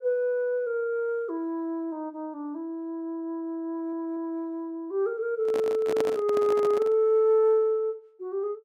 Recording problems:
stutter; at 3.5 s
handling noise; from 5.5 to 7 s; peak 0 dB vs average level

